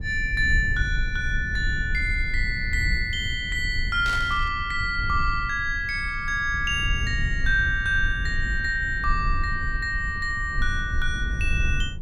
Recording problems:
rumble; below 72 Hz, SNR 6 dB
burst of static; at 4 s; peak -6 dB vs average level

